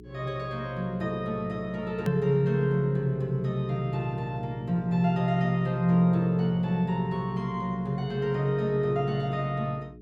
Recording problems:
hum; 60 Hz, harmonics up to 420 Hz, SNR 20 dB
edit click; at 2 s

